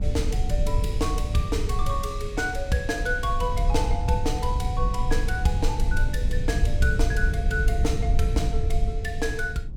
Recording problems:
rumble; below 72 Hz, SNR -1 dB

